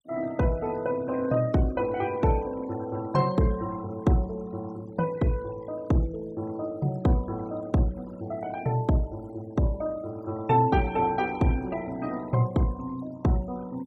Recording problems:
noise reduction artefacts; signal-to-artefact ratio 22 dB

